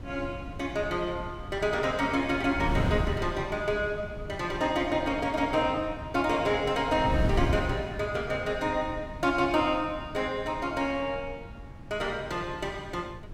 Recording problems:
wind noise; below 190 Hz, SNR 8 dB

